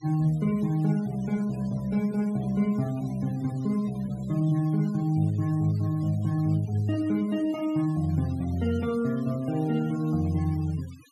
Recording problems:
noise reduction artefacts; signal-to-artefact ratio 23 dB

